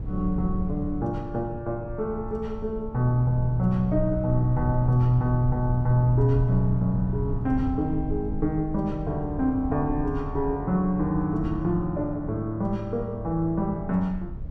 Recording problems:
low-frequency rumble; below 94 Hz, SNR 9 dB

